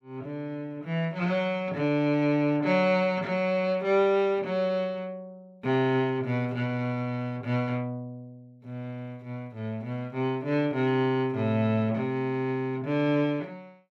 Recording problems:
none

